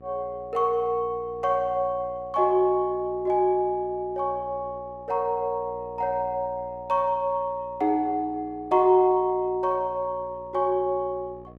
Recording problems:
hum; 60 Hz, harmonics up to 1.2 kHz, SNR 23 dB

